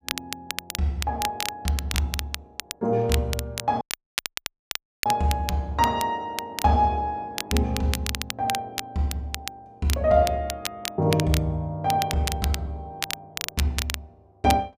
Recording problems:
crackling; vinyl, SNR 7 dB
dropout; at 4 s for 1 s

